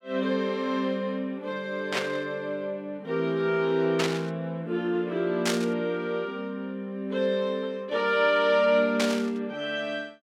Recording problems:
burst of static; 4 times, first at 2 s; peak +3 dB vs average level

